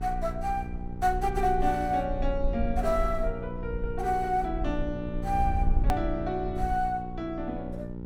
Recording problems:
electrical hum; 60 Hz, harmonics up to 960 Hz, SNR 9 dB
low-frequency rumble; below 54 Hz, SNR 5 dB
edit click; at 6 s

